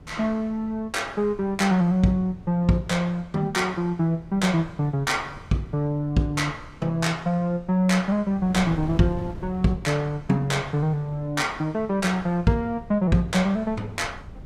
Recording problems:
wind noise; below 190 Hz, SNR 19 dB

